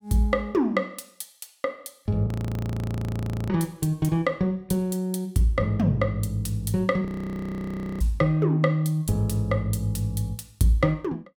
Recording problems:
audio freezing; at 2.5 s for 1 s and at 7 s for 1 s

